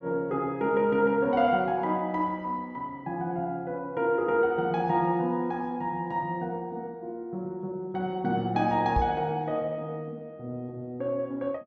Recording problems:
knock on the microphone; at 9 s; peak +2 dB vs average level

